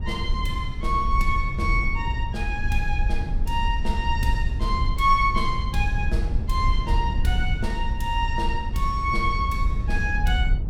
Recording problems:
low-frequency rumble; below 70 Hz, SNR 1 dB

